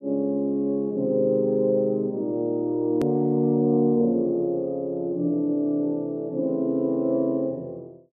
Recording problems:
click at an edit; at 3 s

